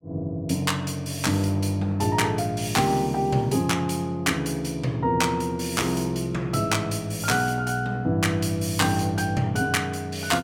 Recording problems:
none

